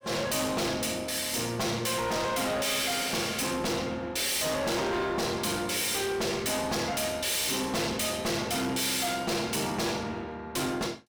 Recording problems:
distorted audio; hard clipping, uneven, signal-to-distortion ratio 5 dB

